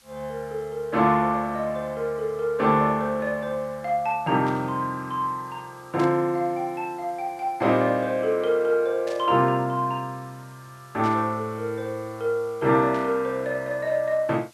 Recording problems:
background hiss; slope +1 dB per octave, SNR 29 dB
burst of static; 5 times, first at 4.5 s; peak -11 dB vs average level

